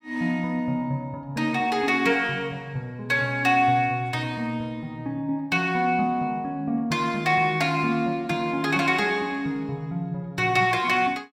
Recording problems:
none

